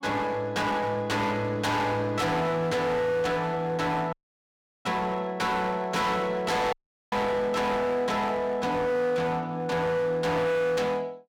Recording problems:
distorted audio; hard clipping, signal-to-distortion ratio 8 dB
dropout; at 4 s for 0.5 s and at 6.5 s

